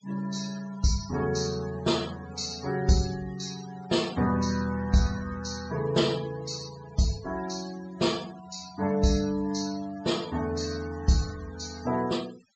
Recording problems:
treble cut off; nothing above 8 kHz
noise reduction artefacts; signal-to-artefact ratio 16 dB

